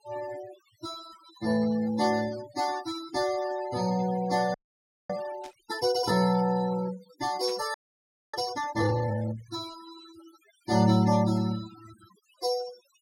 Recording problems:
denoising artefacts; signal-to-artefact ratio 16 dB
frozen audio; at 4.5 s for 0.5 s and at 7.5 s for 0.5 s
burst of static; at 5.5 s and at 7.5 s; peak -12 dB vs average level

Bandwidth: 16.5 kHz